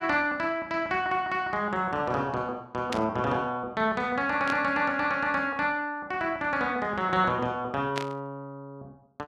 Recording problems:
burst of static; at 3 s, at 4.5 s and at 8 s; peak -1 dB vs average level

